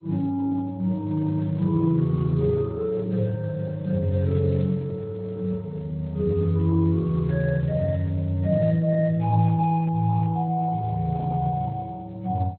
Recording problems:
codec artefacts; Speex, then MP2, log-spectral distance 2 dB, nothing above 4.1 kHz

